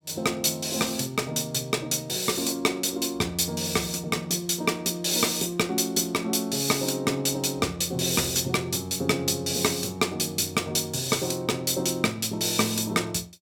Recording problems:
none

